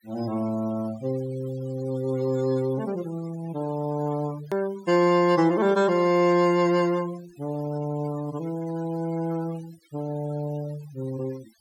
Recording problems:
denoising artefacts; signal-to-artefact ratio 20 dB
click at an edit; at 4.5 s

